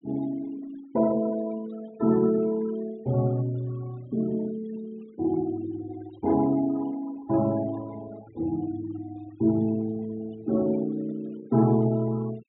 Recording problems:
low-pass filter; nothing above 3.8 kHz
denoising artefacts; signal-to-artefact ratio 21 dB

